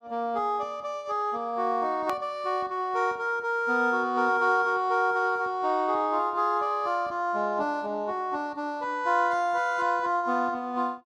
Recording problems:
hard cut with a click; at 2 s

